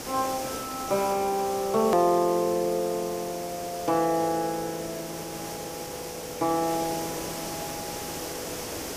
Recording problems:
background hiss; SNR 8 dB
click at an edit; at 2 s

